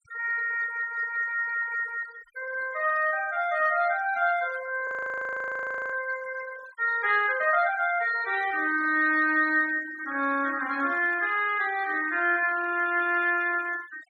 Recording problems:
noise reduction artefacts; signal-to-artefact ratio 20 dB
audio freezing; at 5 s for 1 s

